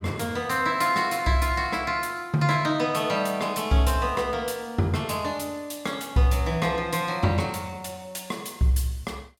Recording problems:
none

